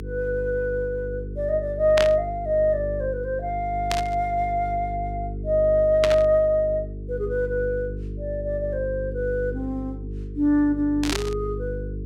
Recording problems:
hum; 50 Hz, harmonics up to 450 Hz, SNR 10 dB
burst of static; 4 times, first at 2 s; peak +2 dB vs average level

